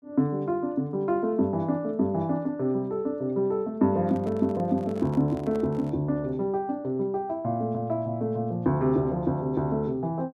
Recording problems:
handling noise; from 4 to 6 s; peak -11 dB vs average level

